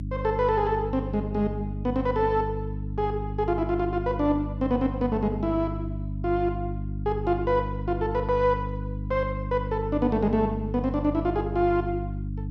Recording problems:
hum; 50 Hz, harmonics up to 300 Hz, SNR 6 dB

